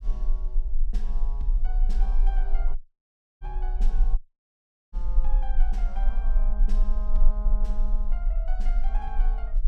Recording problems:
rumble; below 34 Hz, strongest tone 20 Hz, SNR -15 dB
dropout; at 3 s for 0.5 s and at 4 s for 0.5 s

